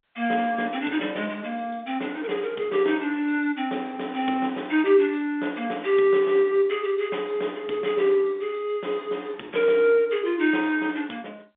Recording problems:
telephone audio; 240 Hz to 3.6 kHz, G.711

